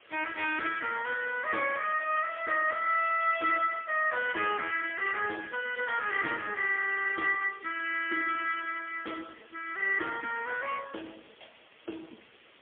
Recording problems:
telephone audio; 240 Hz to 3.3 kHz, AMR-NB, then MP3
background hiss; SNR 27 dB

